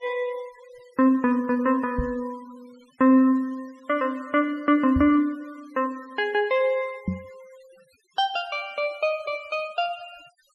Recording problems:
denoising artefacts; signal-to-artefact ratio 27 dB
microphone thump; at 2 s, at 5 s and at 7 s; peak +1 dB vs average level

